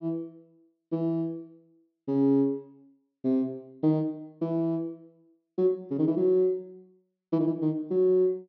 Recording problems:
low-pass filter; nothing above 5.9 kHz

